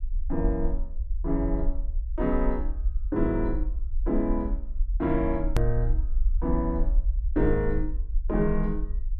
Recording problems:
low-frequency rumble; below 48 Hz, SNR 2 dB
edit click; at 5.5 s

